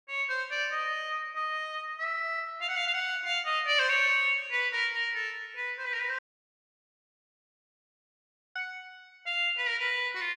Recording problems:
dropout; at 6 s for 2.5 s

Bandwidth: 13 kHz